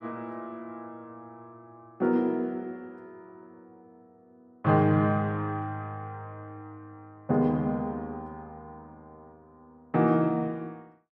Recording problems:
none

